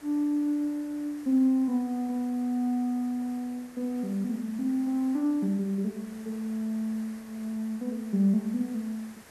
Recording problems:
background hiss; SNR 22 dB

